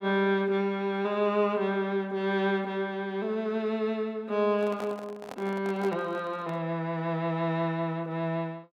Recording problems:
microphone handling noise; from 4.5 to 6.5 s; peak -6 dB vs average level

